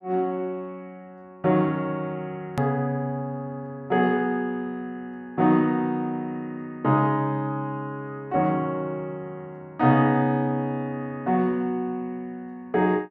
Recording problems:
click at an edit; at 2.5 s

